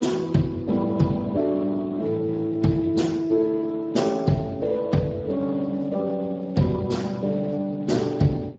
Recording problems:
codec artefacts; Speex, then Speex, log-spectral distance 3 dB, nothing above 7.3 kHz

